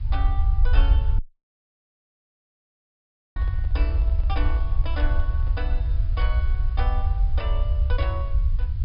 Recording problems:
low-pass filter; nothing above 5.3 kHz
background hiss; SNR 21 dB
rumble; below 66 Hz, SNR -12 dB
dropout; at 1 s for 2 s
handling noise; from 3.5 to 5.5 s; peak -8 dB vs average level

